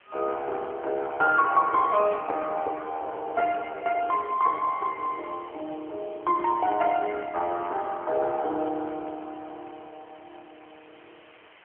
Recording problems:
phone line; 320 Hz to 2.8 kHz, AMR-NB
background hiss; SNR 28 dB

